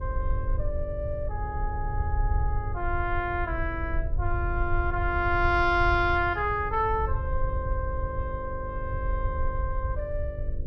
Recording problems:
hum; 50 Hz, harmonics up to 600 Hz, SNR 14 dB
rumble; below 76 Hz, SNR 3 dB

